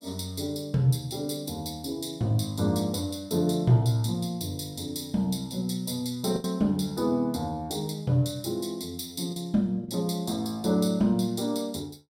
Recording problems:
lost packets; 1.3% of the sound replaced, filled with the last packet

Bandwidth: 16 kHz